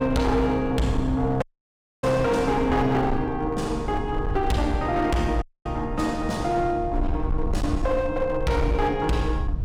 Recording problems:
distorted audio; hard clipping, uneven, signal-to-distortion ratio 11 dB
low-frequency rumble; below 76 Hz, SNR 9 dB
audio cutting out; at 1.5 s for 0.5 s and at 5.5 s

